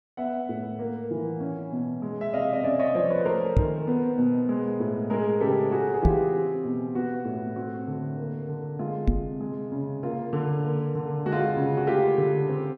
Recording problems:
microphone thump; at 3.5 s, at 6 s and at 9 s; peak +9 dB vs average level

